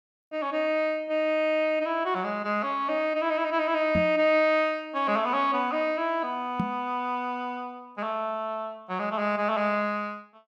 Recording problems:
microphone bump; at 4 s and at 6.5 s; peak +2 dB vs average level

